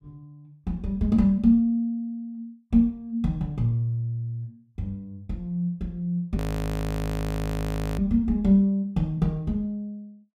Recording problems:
audio freezing; at 6.5 s for 1.5 s

